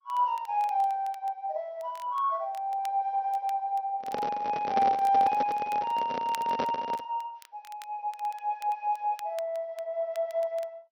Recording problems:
codec artefacts; MP2, log-spectral distance 2 dB
crackle; vinyl, SNR 24 dB
handling noise; from 4 to 7 s; peak +2 dB vs average level

